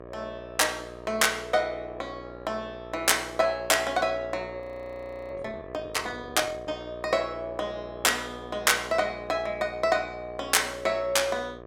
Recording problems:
hum; 60 Hz, harmonics up to 1.9 kHz, SNR 15 dB
frozen audio; at 4.5 s for 0.5 s

